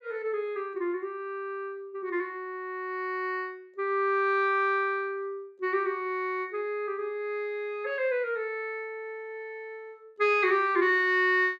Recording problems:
none

